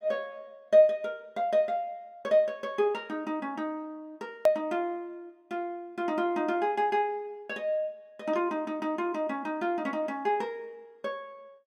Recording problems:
edit click; at 4.5 s

